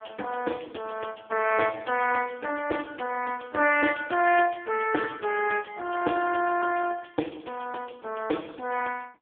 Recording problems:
telephone audio; 260 Hz to 2.8 kHz, AMR-NB

